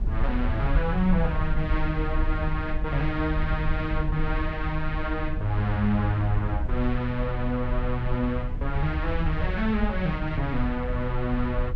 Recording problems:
rumble; below 68 Hz, SNR 3 dB

